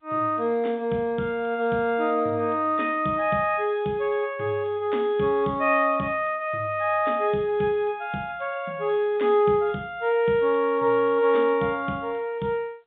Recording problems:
telephone audio; 150 Hz to 3.7 kHz, G.711

